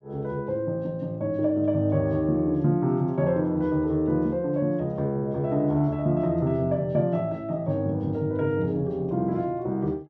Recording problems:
none

